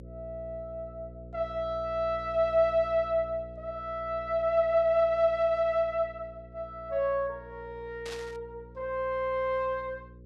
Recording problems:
electrical hum; 60 Hz, harmonics up to 540 Hz, SNR 19 dB
burst of static; at 8 s; peak -9 dB vs average level

